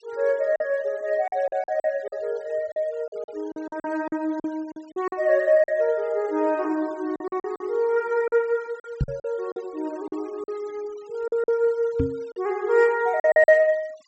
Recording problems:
treble missing; nothing above 8 kHz
denoising artefacts; signal-to-artefact ratio 27 dB
packet loss; 10% of the sound replaced, filled with silence
microphone thump; at 9 s and at 12 s; peak +4 dB vs average level

